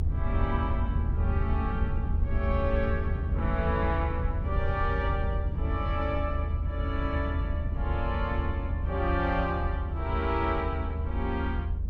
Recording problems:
low-frequency rumble; below 80 Hz, SNR -2 dB

